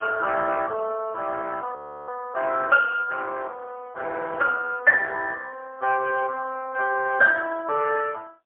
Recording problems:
phone line; 340 Hz to 2.8 kHz, AMR-NB, then MP3
audio freezing; at 2 s

